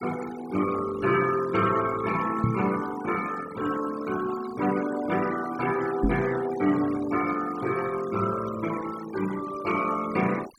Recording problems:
denoising artefacts; signal-to-artefact ratio 13 dB
microphone thump; at 2.5 s and at 6 s; peak +6 dB vs average level

